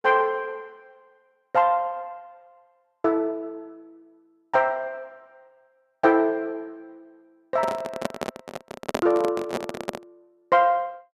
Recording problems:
handling noise; from 7.5 to 10 s; peak +2 dB vs average level

